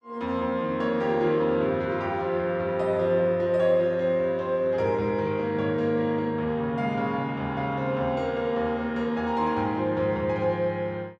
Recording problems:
none

